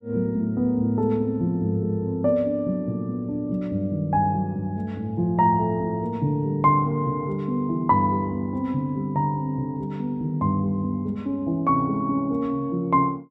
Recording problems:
none

